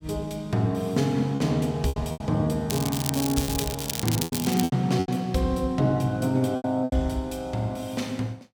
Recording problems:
packet loss; 8% of the sound replaced, filled with repeated pitch periods
crackle; from 2.5 to 4.5 s; loose cable, SNR 5 dB

